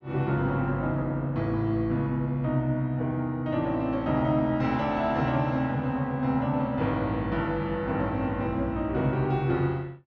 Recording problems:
none

